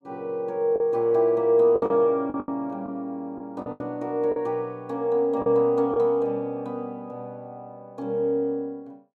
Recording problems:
packet loss; 6% of the sound replaced, filled with the last packet

